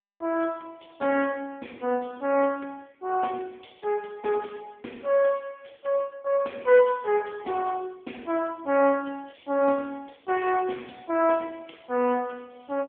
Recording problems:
telephone audio; 240 Hz to 2.3 kHz, AMR-NB

